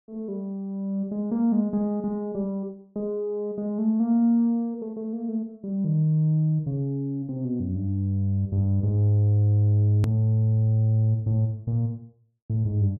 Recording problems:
hard cut with a click; at 10 s

